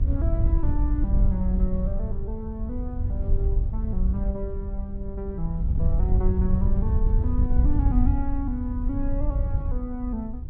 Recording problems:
wind on the microphone; below 72 Hz, SNR -6 dB

